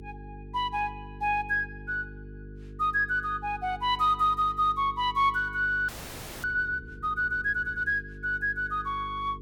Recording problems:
hum; 50 Hz, harmonics up to 450 Hz, SNR 17 dB
frozen audio; at 6 s for 0.5 s

